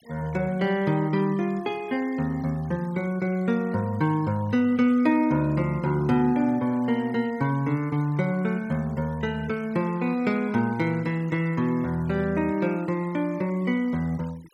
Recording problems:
noise reduction artefacts; signal-to-artefact ratio 25 dB

